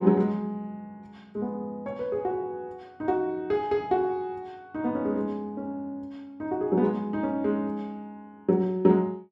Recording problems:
none

